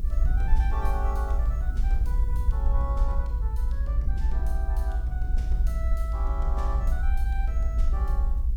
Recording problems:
hiss; slope 0 dB per octave, SNR 24 dB
rumble; below 56 Hz, SNR -12 dB

